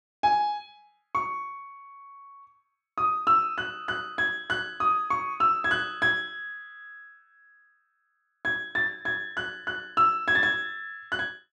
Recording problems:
none

